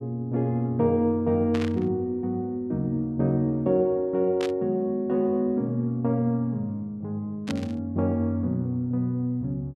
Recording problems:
static burst; at 1.5 s, at 4.5 s and at 7.5 s; peak -5 dB vs average level

